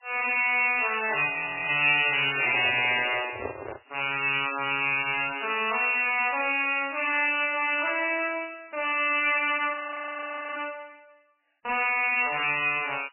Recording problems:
lossy compression; MP3, log-spectral distance 8 dB, nothing above 2.9 kHz
distortion; soft clipping, signal-to-distortion ratio 7 dB
frozen audio; at 1.5 s and at 9.5 s for 1 s
microphone handling noise; from 2.5 to 4 s; peak -5 dB vs average level

